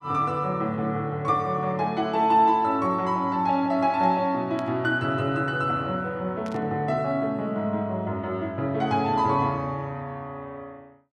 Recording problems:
static burst; at 4.5 s and at 6.5 s; peak -14 dB vs average level

